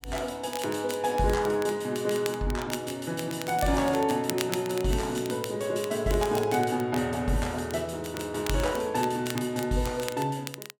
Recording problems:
crackling; vinyl, SNR 13 dB

